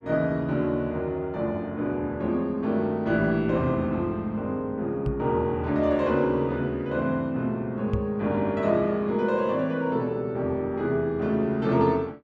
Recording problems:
microphone bump; at 5 s and at 8 s; peak +1 dB vs average level

